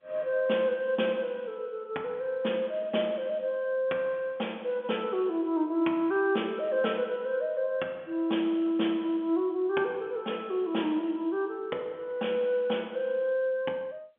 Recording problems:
telephone audio; 240 Hz to 3.4 kHz, G.711

